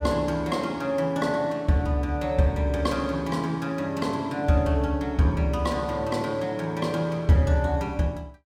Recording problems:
none

